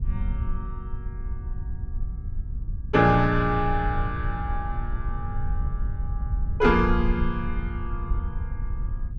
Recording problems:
low-frequency rumble; below 74 Hz, SNR 6 dB

